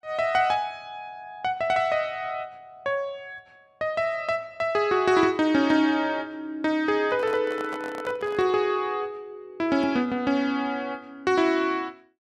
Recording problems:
handling noise; from 7 to 8.5 s; peak -9 dB vs average level

